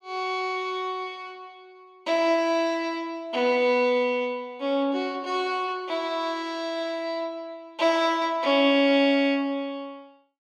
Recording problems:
none

